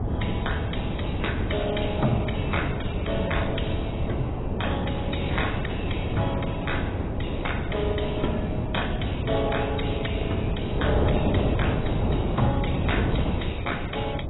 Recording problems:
lossy compression; MP2, then AAC, log-spectral distance 7 dB, nothing above 3.8 kHz
wind on the microphone; below 350 Hz, SNR -2 dB

